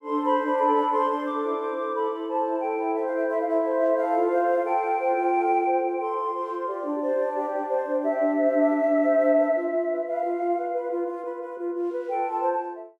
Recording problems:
none

